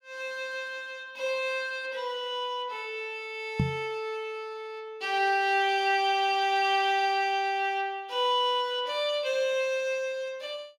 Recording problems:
microphone thump; at 3.5 s; peak +5 dB vs average level

